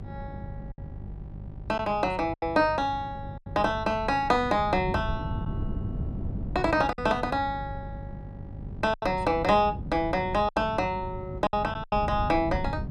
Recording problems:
electrical hum; 50 Hz, harmonics up to 800 Hz, SNR 16 dB
wind on the microphone; below 180 Hz, SNR 11 dB
packet loss; 5% of the sound replaced, filled with silence

